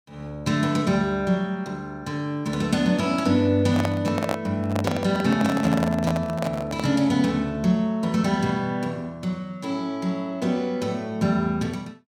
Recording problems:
microphone handling noise; from 3.5 to 7 s; peak +2 dB vs average level

